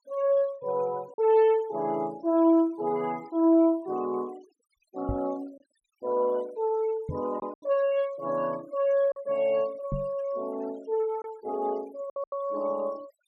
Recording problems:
noise reduction artefacts; signal-to-artefact ratio 26 dB
lost packets; 3% of the sound replaced, filled with silence
knock on the microphone; at 5 s, at 7 s and at 10 s; peak -1 dB vs average level

